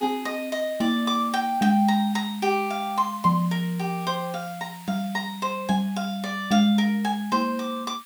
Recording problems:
background hiss; SNR 21 dB

